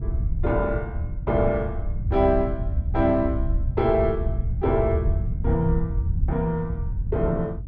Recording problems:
wind on the microphone; below 96 Hz, SNR 2 dB

